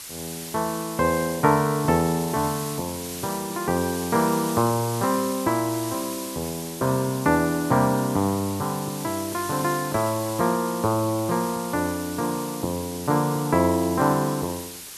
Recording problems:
hiss; slope +1 dB per octave, SNR 10 dB

